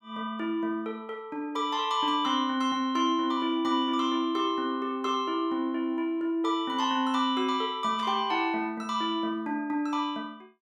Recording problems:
static burst; at 8 s; peak -13 dB vs average level

